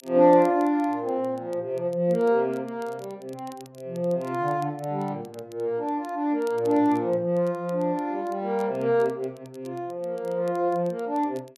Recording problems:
crackling; vinyl, SNR 30 dB

